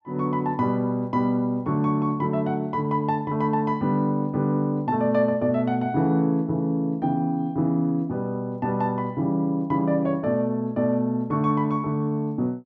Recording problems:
none

